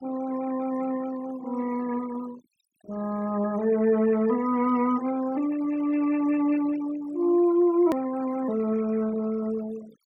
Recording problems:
noise reduction artefacts; signal-to-artefact ratio 20 dB
click at an edit; at 8 s

